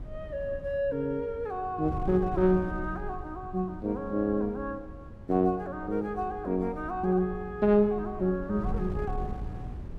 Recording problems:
wind on the microphone; below 140 Hz, SNR 12 dB

